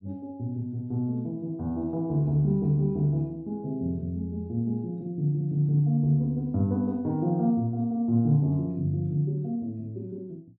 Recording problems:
none

